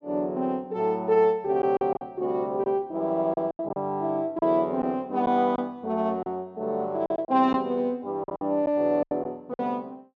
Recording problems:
lost packets; 7% of the sound replaced, filled with silence

